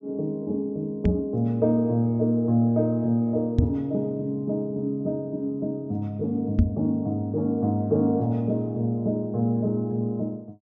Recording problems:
low-pass filter; nothing above 8 kHz
microphone bump; at 1 s, at 3.5 s and at 6.5 s; peak +9 dB vs average level

